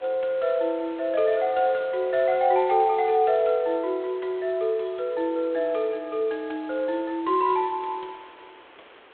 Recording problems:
phone line; 300 Hz to 3.5 kHz, G.726
hiss; SNR 25 dB

